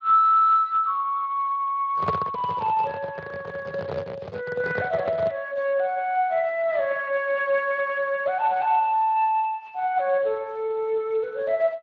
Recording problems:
lossy compression; Speex, then Speex, log-spectral distance 3 dB
handling noise; from 2 to 5.5 s; peak 0 dB vs average level

